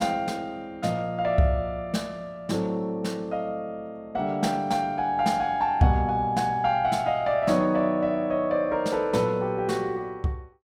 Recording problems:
none

